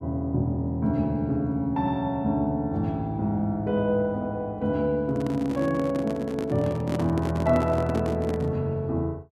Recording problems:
microphone handling noise; from 5 to 8.5 s; peak -1 dB vs average level

